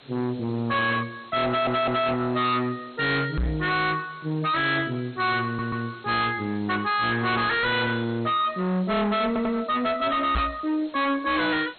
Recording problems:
lossy codec; MP2, log-spectral distance 8 dB, nothing above 4.2 kHz
distorted audio; hard clipping, signal-to-distortion ratio 5 dB
hiss; SNR 25 dB
stutter; at 1.5 s, at 5.5 s and at 9.5 s
microphone bump; at 3.5 s and at 10 s; peak +4 dB vs average level

